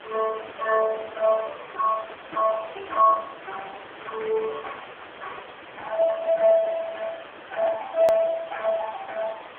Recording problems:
telephone audio; 340 Hz to 2.9 kHz, AMR-NB
hiss; SNR 16 dB
click at an edit; at 8 s

